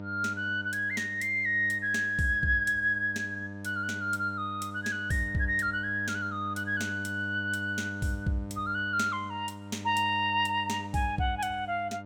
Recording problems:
mains hum; 50 Hz, harmonics up to 1.3 kHz, SNR 12 dB

